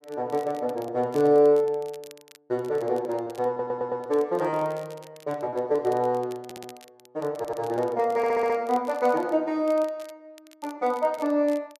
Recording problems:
crackling; vinyl, SNR 26 dB
lost packets; 5% of the sound replaced, filled with repeated pitch periods
audio stuttering; 4 times, first at 3.5 s

